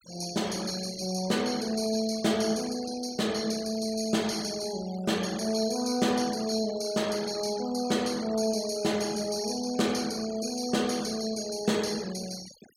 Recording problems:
noise reduction artefacts; signal-to-artefact ratio 16 dB

